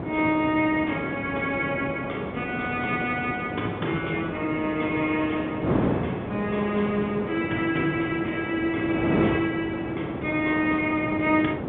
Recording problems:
phone line; 170 Hz to 3.6 kHz, G.711
wind on the microphone; below 580 Hz, SNR 4 dB

